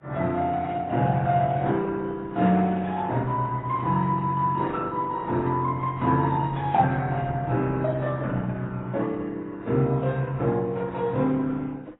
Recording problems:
codec artefacts; Opus, then AAC, log-spectral distance 3 dB, nothing above 3.8 kHz

